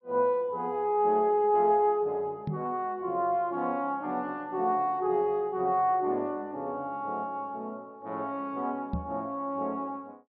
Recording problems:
treble cut off; nothing above 5.5 kHz
knock on the microphone; at 2.5 s and at 9 s; peak +1 dB vs average level

